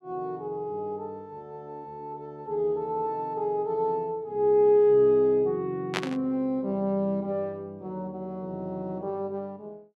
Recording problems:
static burst; at 6 s; peak +2 dB vs average level

